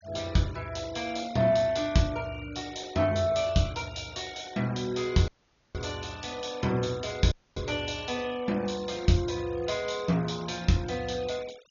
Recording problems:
low-pass filter; nothing above 6.8 kHz
noise reduction artefacts; signal-to-artefact ratio 20 dB
audio cutting out; at 5.5 s and at 7.5 s

